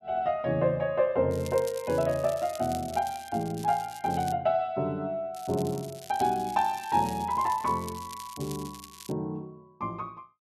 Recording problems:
crackling; from 1.5 to 4.5 s and from 5.5 to 9 s; loose cable, SNR 17 dB

